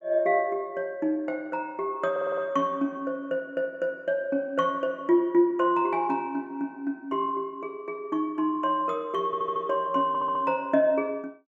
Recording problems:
audio stuttering; at 2 s, at 9.5 s and at 10 s

